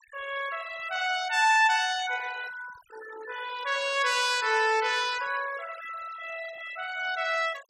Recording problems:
denoising artefacts; signal-to-artefact ratio 15 dB

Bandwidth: 16.5 kHz